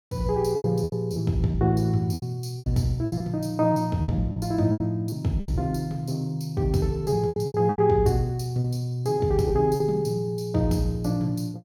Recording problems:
packet loss; 10% of the sound replaced, filled with repeated pitch periods

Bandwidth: 17.5 kHz